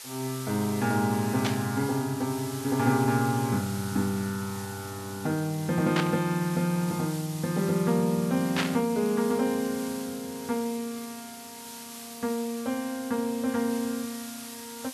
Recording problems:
hiss; slope +2 dB per octave, SNR 13 dB
static burst; at 1.5 s, at 6 s and at 8.5 s; peak +4 dB vs average level

